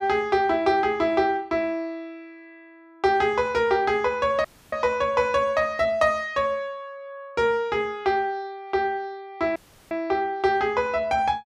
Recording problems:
audio cutting out; at 4.5 s and at 9.5 s

